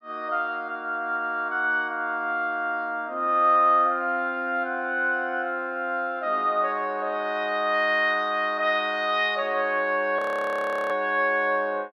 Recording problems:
audio freezing; at 10 s for 0.5 s

